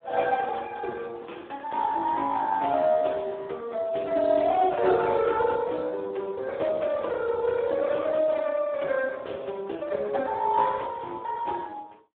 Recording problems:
phone line; 280 Hz to 3.7 kHz, Speex

